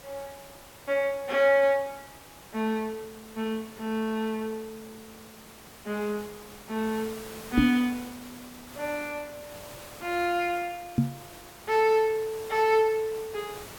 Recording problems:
background hiss; slope -3 dB per octave, SNR 18 dB
microphone thump; at 7.5 s and at 11 s; peak +8 dB vs average level

